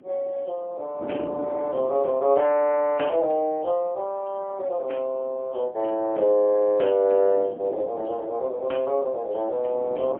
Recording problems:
phone line; 240 Hz to 3.2 kHz, AMR-NB, then MP3
wind noise; below 450 Hz, SNR 18 dB

